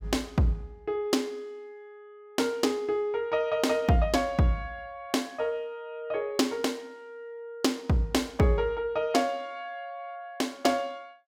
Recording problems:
none

